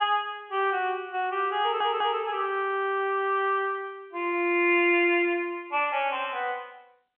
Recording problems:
telephone audio; 300 Hz to 3.4 kHz, G.711
audio stuttering; at 1.5 s

